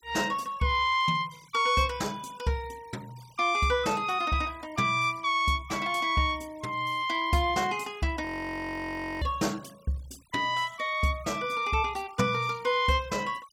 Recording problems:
noise reduction artefacts; signal-to-artefact ratio 24 dB
frozen audio; at 8.5 s for 1 s

